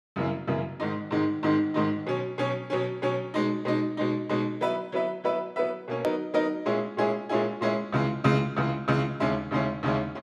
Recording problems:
hard cut with a click; at 6 s

